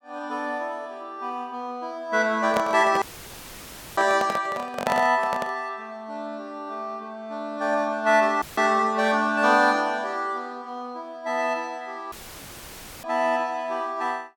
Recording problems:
handling noise; from 2.5 to 5.5 s; peak +2 dB vs average level
dropout; at 3 s for 1 s, at 8.5 s and at 12 s for 1 s; filled with static

